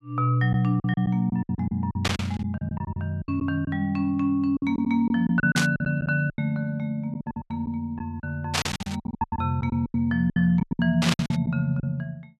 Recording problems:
packet loss; 16% of the sound replaced, filled with silence
burst of static; 4 times, first at 2 s; peak +5 dB vs average level

